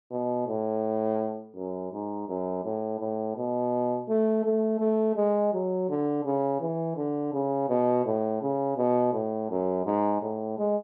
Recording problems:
none

